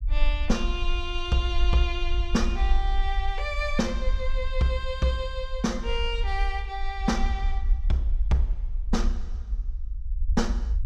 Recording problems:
low-frequency rumble; below 50 Hz, SNR 1 dB

